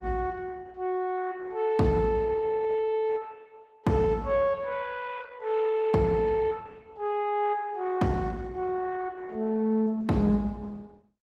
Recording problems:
codec artefacts; Opus, log-spectral distance 2 dB, nothing above 17.1 kHz

